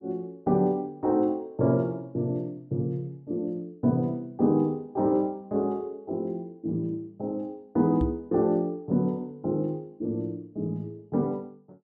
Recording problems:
microphone bump; at 8 s; peak +2 dB vs average level

